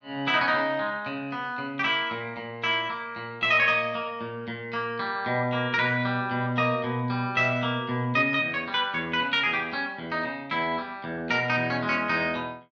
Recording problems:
none

